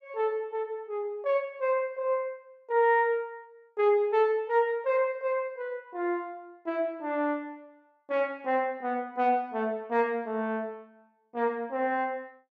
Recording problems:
none

